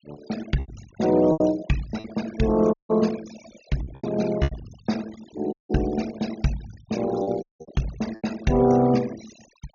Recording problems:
treble missing; nothing above 6.8 kHz
noise reduction artefacts; signal-to-artefact ratio 17 dB
lost packets; 7% of the sound replaced, filled with repeated pitch periods
dropout; at 2.5 s, at 5.5 s and at 7.5 s

